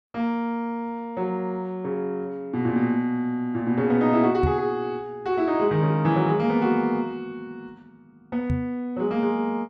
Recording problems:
knock on the microphone; at 4.5 s and at 8.5 s; peak +3 dB vs average level

